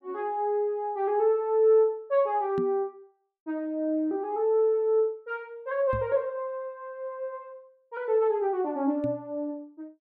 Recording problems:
microphone thump; at 2.5 s, at 6 s and at 9 s; peak -3 dB vs average level

